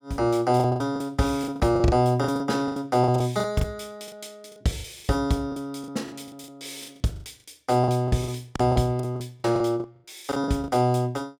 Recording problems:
packet loss; 16% of the sound replaced, filled with the last packet

